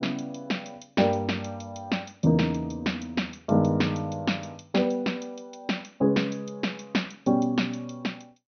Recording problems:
treble cut off; nothing above 6.2 kHz

